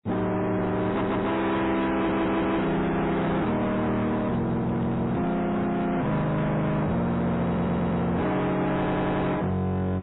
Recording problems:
lossy compression; MP3, then AAC, log-spectral distance 2 dB, nothing above 3.8 kHz
distorted audio; hard clipping, uneven, signal-to-distortion ratio 6 dB
stutter; 4 times, first at 1 s
handling noise; from 3.5 to 6.5 s; peak -5 dB vs average level

